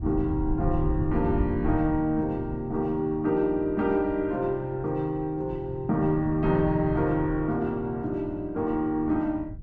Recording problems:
low-frequency rumble; below 100 Hz, SNR 10 dB

